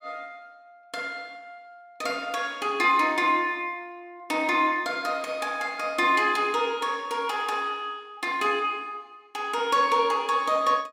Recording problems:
none

